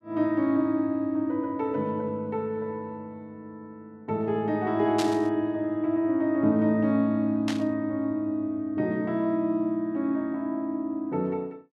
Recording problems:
static burst; at 5 s and at 7.5 s; peak -2 dB vs average level

